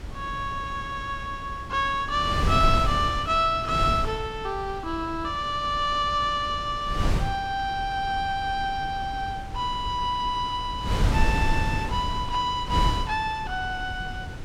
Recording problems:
wind noise; below 170 Hz, SNR 5 dB

